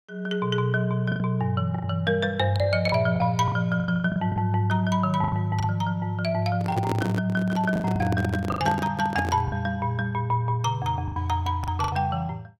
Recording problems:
lost packets; 9% of the sound replaced, filled with the last packet
microphone handling noise; from 6.5 to 9.5 s; peak 0 dB vs average level

